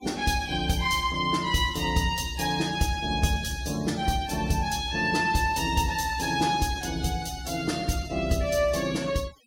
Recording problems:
denoising artefacts; signal-to-artefact ratio 19 dB

